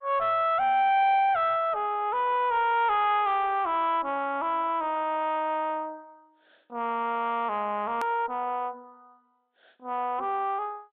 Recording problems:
treble missing; nothing above 4 kHz
codec artefacts; MP2, log-spectral distance 2 dB
distorted audio; soft clipping, signal-to-distortion ratio 10 dB
edit click; at 8 s

